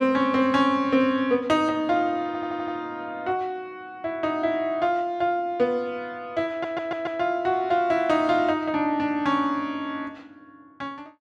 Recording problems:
stutter; at 2.5 s and at 6.5 s

